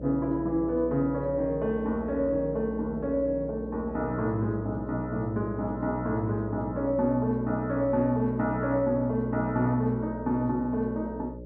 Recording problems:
mains hum; 60 Hz, harmonics up to 600 Hz, SNR 12 dB

